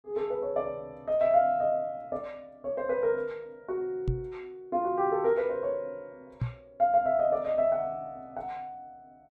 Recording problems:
microphone bump; at 4 s and at 6.5 s; peak +3 dB vs average level

